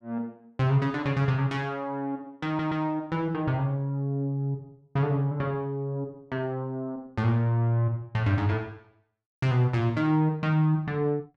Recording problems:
audio stuttering; at 2.5 s

